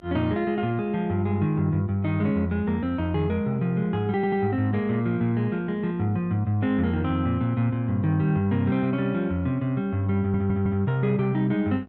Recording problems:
hum; 50 Hz, harmonics up to 1.6 kHz, SNR 28 dB
audio stuttering; at 4 s and at 10 s

